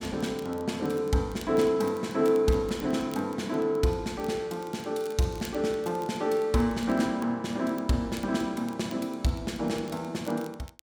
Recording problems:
crackling; vinyl, SNR 24 dB

